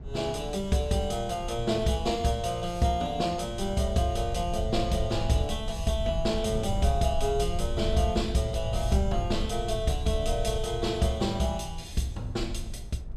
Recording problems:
rumble; below 78 Hz, SNR 8 dB
wind on the microphone; below 470 Hz, SNR 21 dB

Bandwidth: 14 kHz